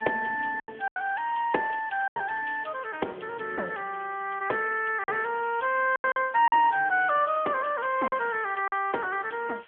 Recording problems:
telephone audio; 320 Hz to 3.2 kHz, AMR-NB
background hiss; SNR 27 dB
packet loss; 5% of the sound replaced, filled with silence

